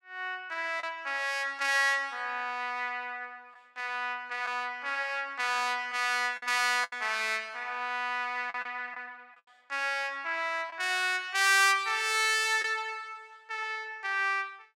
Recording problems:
packet loss; 2% of the sound replaced, filled with the last packet

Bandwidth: 16 kHz